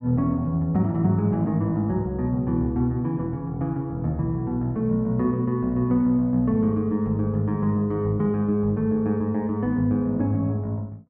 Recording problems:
none

